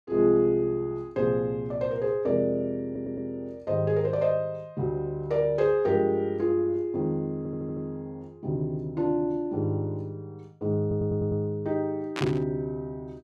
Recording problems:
audio stuttering; at 3 s, at 7.5 s and at 11 s
burst of static; at 12 s; peak -2 dB vs average level

